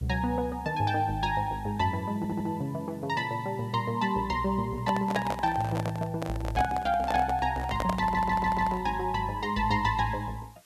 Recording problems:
hiss; slope 0 dB per octave, SNR 29 dB
stutter; at 2 s and at 8 s
microphone handling noise; from 5 to 9 s; peak +2 dB vs average level

